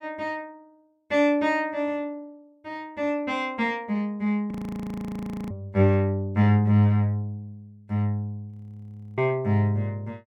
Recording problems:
frozen audio; at 4.5 s for 1 s and at 8.5 s for 0.5 s

